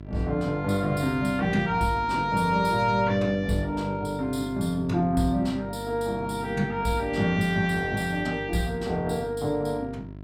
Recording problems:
electrical hum; 50 Hz, harmonics up to 1 kHz, SNR 14 dB

